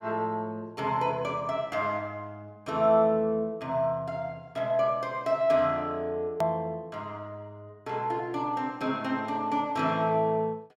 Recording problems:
edit click; at 6.5 s

